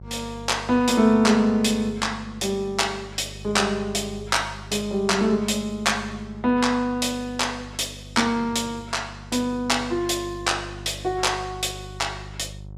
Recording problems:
hum; 50 Hz, harmonics up to 750 Hz, SNR 17 dB

